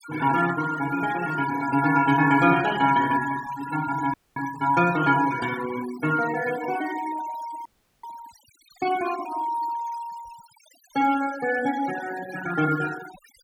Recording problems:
denoising artefacts; signal-to-artefact ratio 14 dB
audio freezing; at 4 s and at 7.5 s

